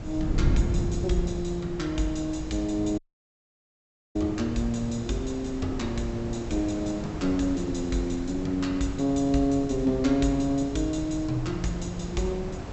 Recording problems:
low-pass filter; nothing above 7.9 kHz
hum; 50 Hz, harmonics up to 500 Hz, SNR 20 dB
hiss; slope -7 dB per octave, SNR 13 dB
wind on the microphone; below 130 Hz, SNR 8 dB
audio cutting out; at 3 s for 1 s

